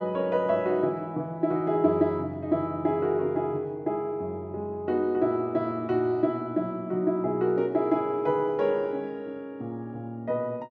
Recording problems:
none

